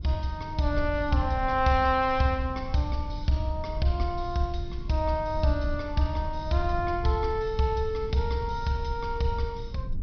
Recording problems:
treble missing; nothing above 5.8 kHz
low-frequency rumble; below 82 Hz, SNR 9 dB

